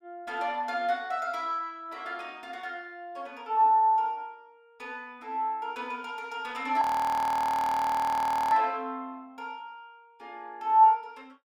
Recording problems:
audio freezing; at 7 s for 1.5 s

